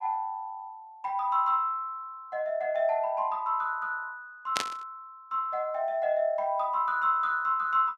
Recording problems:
burst of static; at 4.5 s; peak +4 dB vs average level

